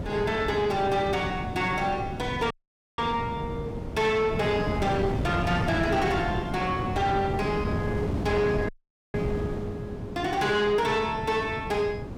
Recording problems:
distortion; soft clipping, signal-to-distortion ratio 11 dB
wind on the microphone; below 340 Hz, SNR 5 dB
dropout; at 2.5 s and at 8.5 s

